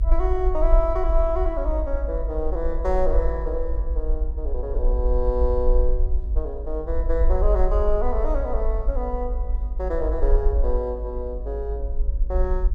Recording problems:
hum; 50 Hz, harmonics up to 600 Hz, SNR 19 dB
low-frequency rumble; below 52 Hz, SNR -1 dB

